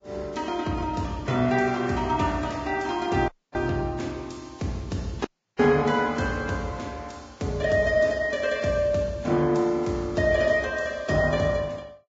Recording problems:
lossy codec; Vorbis, log-spectral distance 3 dB, nothing above 7.3 kHz
audio cutting out; at 3.5 s and at 5.5 s

